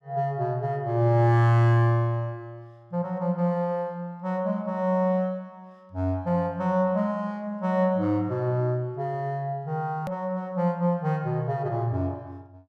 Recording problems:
click at an edit; at 10 s

